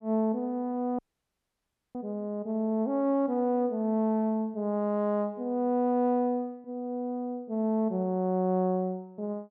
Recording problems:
dropout; at 1 s for 1 s

